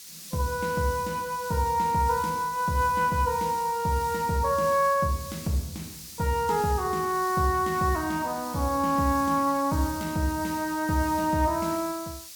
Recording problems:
background hiss; SNR 14 dB

